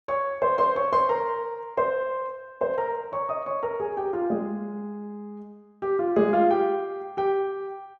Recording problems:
none

